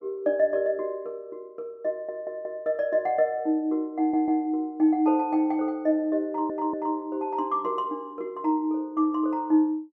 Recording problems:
stutter; at 2 s, at 4 s and at 6.5 s

